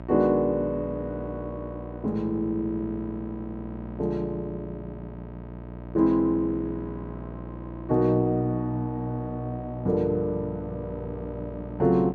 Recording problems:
hum; 60 Hz, harmonics up to 1.3 kHz, SNR 11 dB

